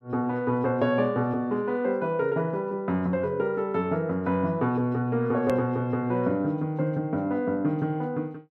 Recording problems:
edit click; at 5.5 s

